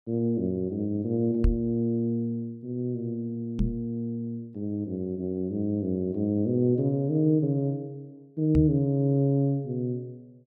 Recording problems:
microphone bump; at 1.5 s, at 3.5 s and at 8.5 s; peak +6 dB vs average level

